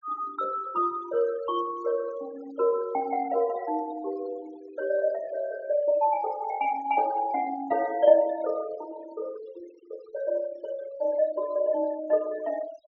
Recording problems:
low-pass filter; nothing above 6.9 kHz
denoising artefacts; signal-to-artefact ratio 19 dB

